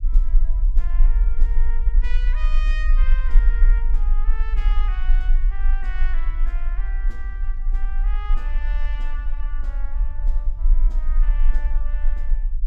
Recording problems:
rumble; below 38 Hz, strongest tone 24 Hz, SNR -16 dB

